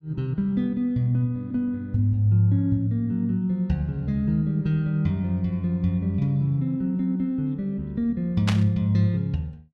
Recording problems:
static burst; at 8.5 s; peak 0 dB vs average level

